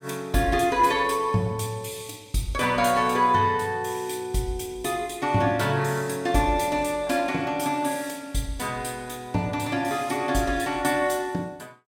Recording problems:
none

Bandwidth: 17 kHz